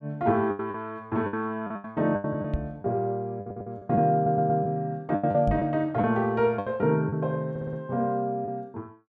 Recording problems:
lost packets; 10% of the sound replaced, filled with the last packet
microphone bump; at 2.5 s and at 5.5 s; peak +2 dB vs average level
stutter; at 3.5 s, at 4 s and at 7.5 s

